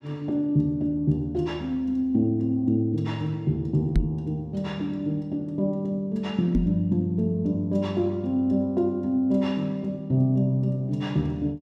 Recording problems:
microphone bump; at 4 s and at 6.5 s; peak +6 dB vs average level

